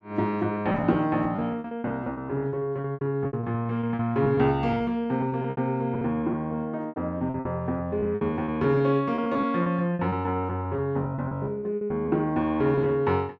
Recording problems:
packet loss; 15% of the sound replaced, filled with repeated pitch periods

